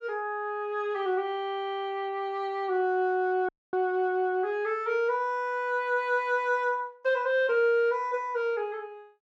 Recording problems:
dropout; at 3.5 s

